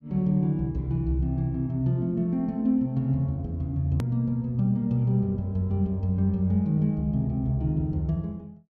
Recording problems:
hard cut with a click; at 4 s

